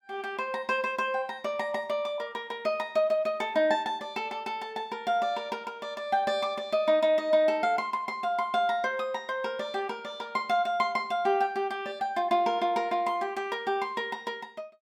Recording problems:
none

